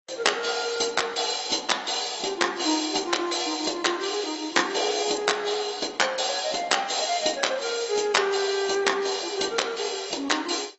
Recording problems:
lossy codec; AAC, log-spectral distance 7 dB, nothing above 7.6 kHz

